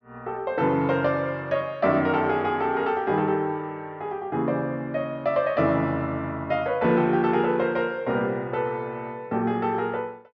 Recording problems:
treble missing; nothing above 6.2 kHz

